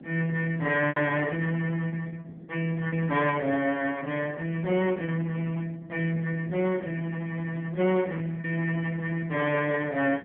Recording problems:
phone line; 190 Hz to 3.2 kHz, AMR-NB
distortion; soft clipping, signal-to-distortion ratio 18 dB
wind noise; below 380 Hz, SNR 20 dB
lost packets; 4% of the sound replaced, filled with repeated pitch periods

